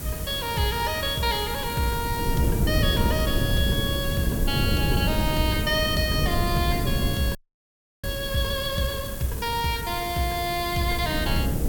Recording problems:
hiss; slope -2 dB per octave, SNR 9 dB
wind on the microphone; below 220 Hz, SNR 3 dB
frozen audio; at 7.5 s for 0.5 s

